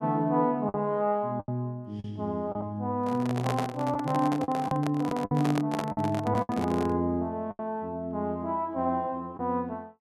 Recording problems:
packet loss; 6% of the sound replaced, filled with the last packet
microphone handling noise; from 3 to 7 s; peak +2 dB vs average level

